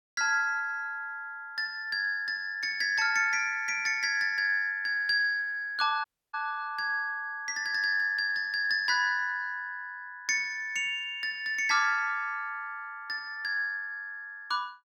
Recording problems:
dropout; at 6 s

